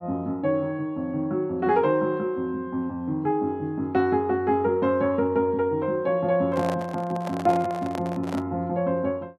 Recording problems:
microphone handling noise; from 6.5 to 8.5 s; peak -2 dB vs average level

